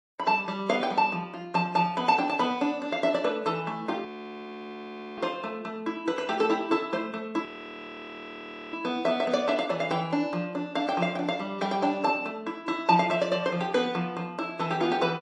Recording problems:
codec artefacts; MP3, log-spectral distance 2 dB, nothing above 10.4 kHz
audio freezing; at 4 s for 1 s and at 7.5 s for 1.5 s

